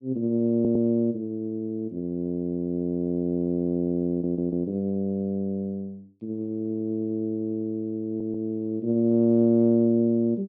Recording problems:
stutter; at 0.5 s, at 4 s and at 8 s

